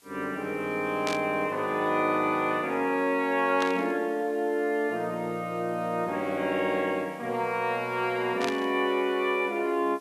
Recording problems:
background hiss; slope +1 dB per octave, SNR 29 dB
static burst; at 1 s, at 3.5 s and at 8.5 s; peak -1 dB vs average level

